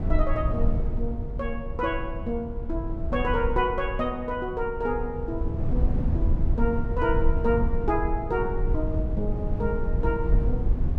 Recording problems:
rumble; below 80 Hz, SNR 0 dB

